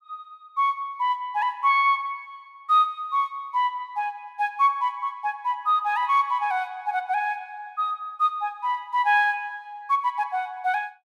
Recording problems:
none

